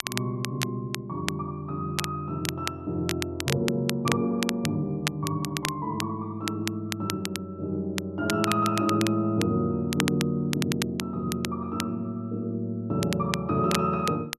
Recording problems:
crackle; vinyl, SNR 6 dB

